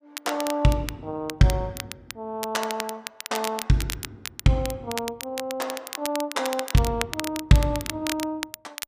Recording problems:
crackling; vinyl, SNR 8 dB

